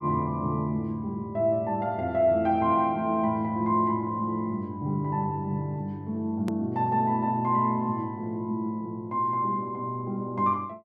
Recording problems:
hard cut with a click; at 6.5 s

